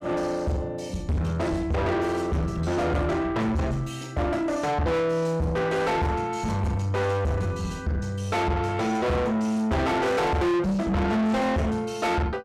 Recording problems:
distortion; soft clipping, signal-to-distortion ratio 6 dB

